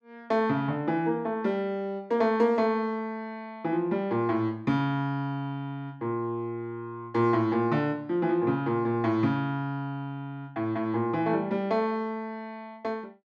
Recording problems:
none

